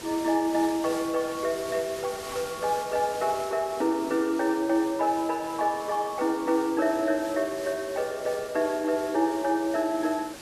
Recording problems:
hiss; slope -2 dB per octave, SNR 14 dB

